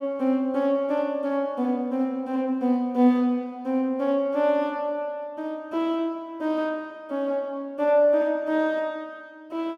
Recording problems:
none

